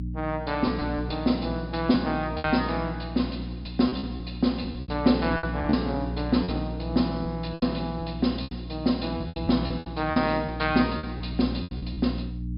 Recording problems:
low-pass filter; nothing above 5.5 kHz
hum; 60 Hz, harmonics up to 300 Hz, SNR 8 dB
lost packets; 10% of the sound replaced, filled with repeated pitch periods

